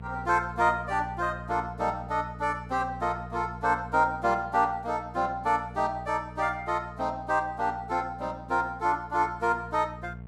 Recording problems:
hum; 60 Hz, harmonics up to 900 Hz, SNR 15 dB

